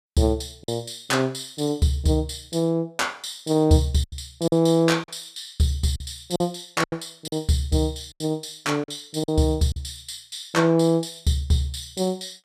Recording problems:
packet loss; 5% of the sound replaced, filled with silence

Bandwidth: 14.5 kHz